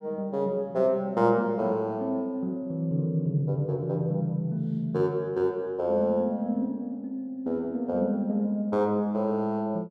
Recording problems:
none

